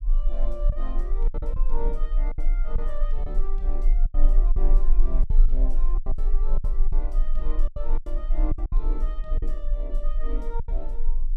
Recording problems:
rumble; below 32 Hz, strongest tone 20 Hz, SNR -12 dB
packet loss; 10% of the sound replaced, filled with silence

